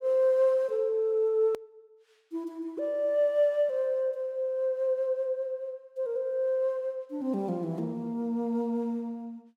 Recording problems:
hard cut with a click; at 1.5 s

